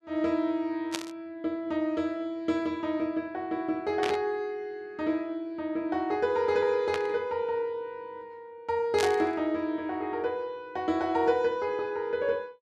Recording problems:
burst of static; 4 times, first at 1 s; peak +1 dB vs average level

